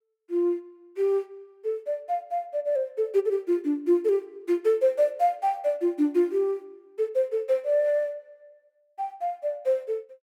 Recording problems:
none

